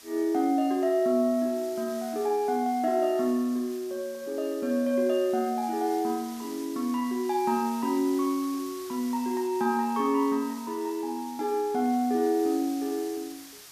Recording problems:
background hiss; slope +1 dB per octave, SNR 18 dB

